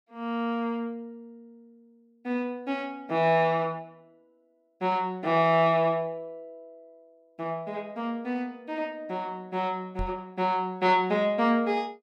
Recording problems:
microphone bump; at 10 s; peak -4 dB vs average level

